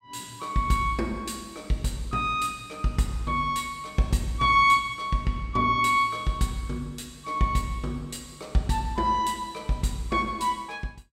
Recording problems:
none

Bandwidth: 16 kHz